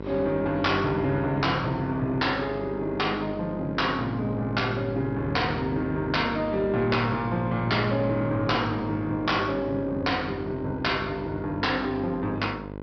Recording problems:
low-pass filter; nothing above 5.5 kHz
distorted audio; soft clipping, signal-to-distortion ratio 11 dB
hum; 50 Hz, harmonics up to 1.6 kHz, SNR 10 dB

